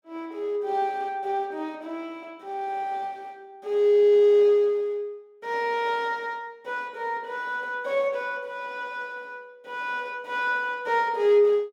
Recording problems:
none

